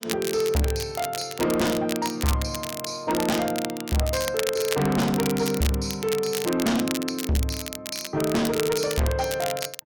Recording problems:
distorted audio; soft clipping, signal-to-distortion ratio 6 dB
crackling; vinyl, SNR 7 dB

